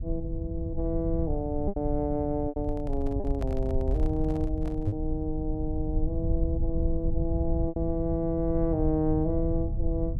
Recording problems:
low-frequency rumble; below 82 Hz, SNR 2 dB
packet loss; 3% of the sound replaced, filled with repeated pitch periods
microphone handling noise; from 2.5 to 5 s; peak -7 dB vs average level

